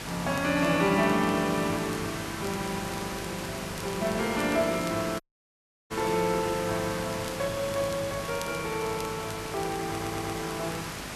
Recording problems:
hum; 50 Hz, harmonics up to 750 Hz, SNR 16 dB
hiss; slope -2 dB per octave, SNR 7 dB
crackling; vinyl, SNR 20 dB
audio cutting out; at 5 s for 0.5 s
audio stuttering; at 10 s

